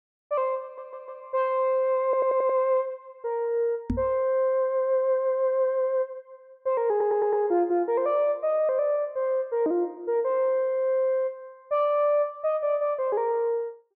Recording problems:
audio stuttering; at 0.5 s, at 2 s and at 7 s
microphone thump; at 4 s; peak +2 dB vs average level

